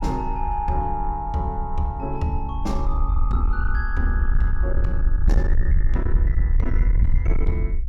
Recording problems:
distortion; soft clipping, signal-to-distortion ratio 10 dB
rumble; below 60 Hz, SNR -3 dB

